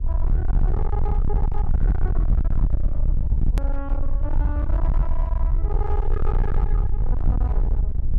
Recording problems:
distorted audio; hard clipping, signal-to-distortion ratio 6 dB
low-frequency rumble; below 60 Hz, SNR -11 dB
click at an edit; at 3.5 s

